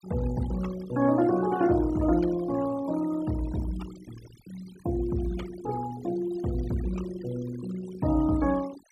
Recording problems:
denoising artefacts; signal-to-artefact ratio 17 dB

